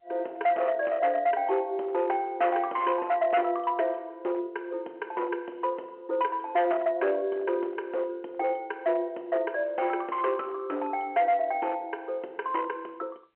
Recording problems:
telephone audio; 300 Hz to 3.6 kHz, G.711
distortion; hard clipping, uneven, signal-to-distortion ratio 12 dB

